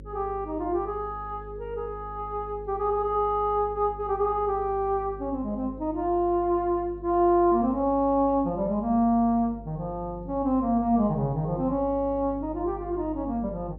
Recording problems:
electrical hum; 50 Hz, harmonics up to 550 Hz, SNR 17 dB

